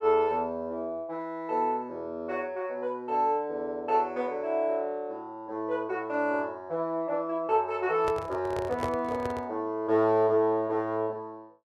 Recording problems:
handling noise; from 8 to 9.5 s; peak 0 dB vs average level

